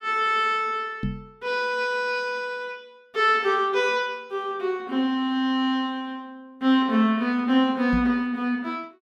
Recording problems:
knock on the microphone; at 1 s and at 8 s; peak 0 dB vs average level

